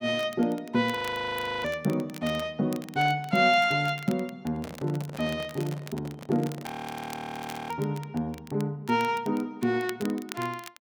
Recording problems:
crackle; vinyl, SNR 18 dB
frozen audio; at 1 s for 0.5 s and at 6.5 s for 1 s
microphone handling noise; from 4.5 to 6.5 s; peak -7 dB vs average level

